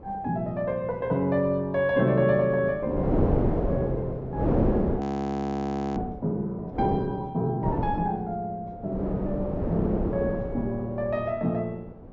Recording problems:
treble cut off; nothing above 7.4 kHz
wind noise; below 490 Hz, SNR 2 dB
frozen audio; at 5 s for 1 s

